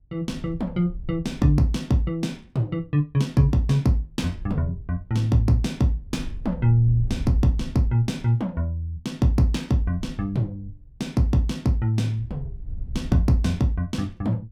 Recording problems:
wind noise; below 74 Hz, SNR 15 dB

